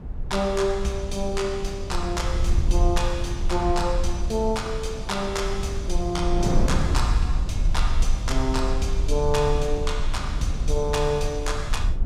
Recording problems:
low-frequency rumble; below 58 Hz, SNR 2 dB
wind on the microphone; below 310 Hz, SNR 9 dB

